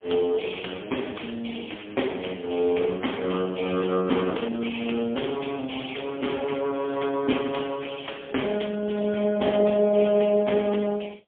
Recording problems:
telephone audio; 240 Hz to 3.3 kHz, AMR-NB, then MP3

